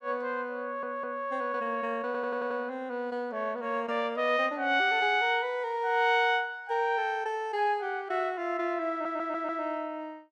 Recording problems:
audio stuttering; at 0.5 s, at 2 s and at 9 s

